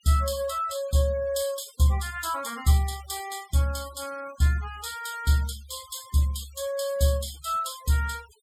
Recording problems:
noise reduction artefacts; signal-to-artefact ratio 19 dB

